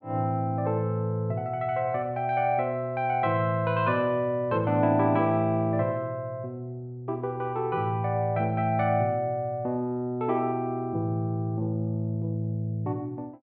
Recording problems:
none

